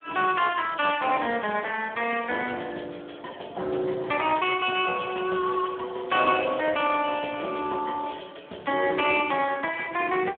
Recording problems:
phone line; 260 Hz to 3.6 kHz, Speex

